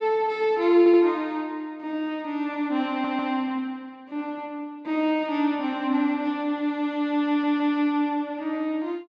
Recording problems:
audio stuttering; at 1 s, at 3 s and at 7.5 s

